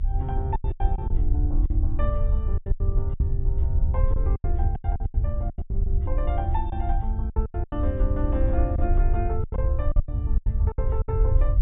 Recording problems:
treble cut off; nothing above 4 kHz
rumble; below 76 Hz, SNR -8 dB
wind noise; below 120 Hz, SNR 11 dB
packet loss; 14% of the sound replaced, filled with silence

